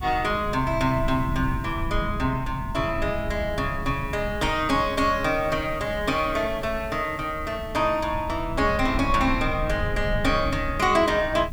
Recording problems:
background hiss; slope -2 dB per octave, SNR 27 dB
rumble; below 120 Hz, SNR 9 dB

